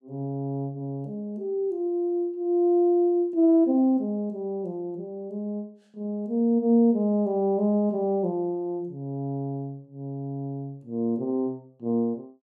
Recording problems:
none

